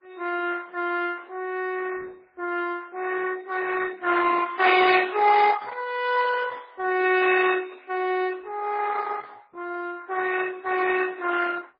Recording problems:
codec artefacts; Opus, then MP3, log-spectral distance 5 dB, nothing above 4.1 kHz

